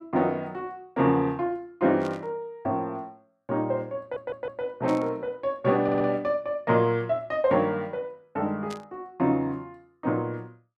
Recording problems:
burst of static; at 2 s, at 5 s and at 8.5 s; peak -10 dB vs average level
stutter; at 4 s and at 6 s

